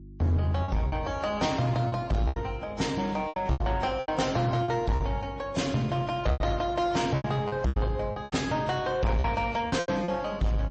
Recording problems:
lossy compression; AAC, then MP3, log-spectral distance 2 dB, nothing above 8 kHz
distortion; soft clipping, signal-to-distortion ratio 8 dB
hum; 50 Hz, harmonics up to 350 Hz, SNR 20 dB
packet loss; 11% of the sound replaced, filled with repeated pitch periods

